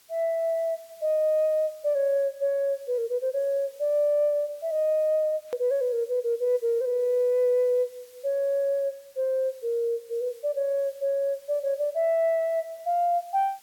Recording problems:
hiss; slope +1 dB per octave, SNR 28 dB
click at an edit; at 5.5 s

